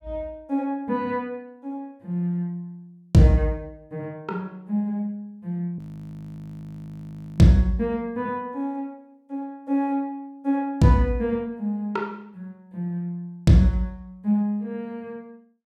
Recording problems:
frozen audio; at 6 s for 1.5 s

